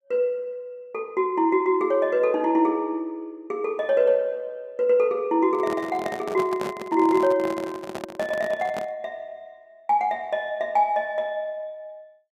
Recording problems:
microphone handling noise; from 5.5 to 9 s; peak -4 dB vs average level

